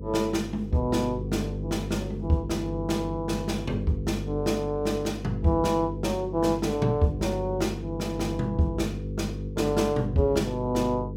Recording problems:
electrical hum; 50 Hz, harmonics up to 500 Hz, SNR 7 dB

